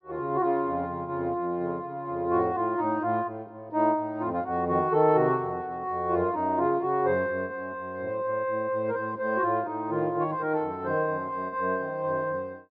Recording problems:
treble cut off; nothing above 5.5 kHz

